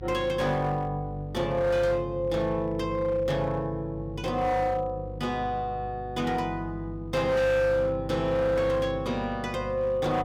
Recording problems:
distortion; hard clipping, signal-to-distortion ratio 10 dB
hum; 50 Hz, harmonics up to 500 Hz, SNR 13 dB

